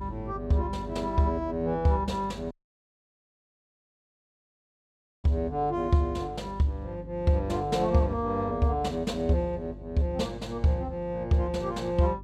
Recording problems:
electrical hum; 50 Hz, harmonics up to 400 Hz, SNR 16 dB
dropout; at 2.5 s for 2.5 s

